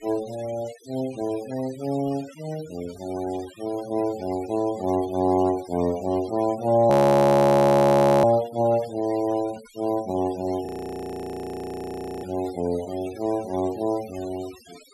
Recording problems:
noise reduction artefacts; signal-to-artefact ratio 20 dB
audio freezing; at 7 s for 1.5 s and at 11 s for 1.5 s

